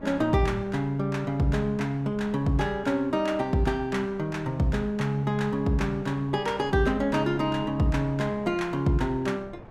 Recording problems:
wind on the microphone; below 510 Hz, SNR 20 dB

